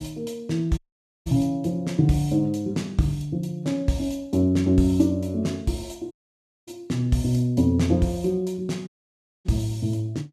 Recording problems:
audio cutting out; at 1 s, at 6 s for 0.5 s and at 9 s for 0.5 s

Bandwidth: 14.5 kHz